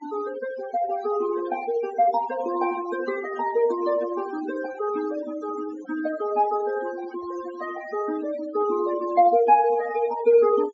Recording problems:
treble missing; nothing above 7.4 kHz
denoising artefacts; signal-to-artefact ratio 15 dB

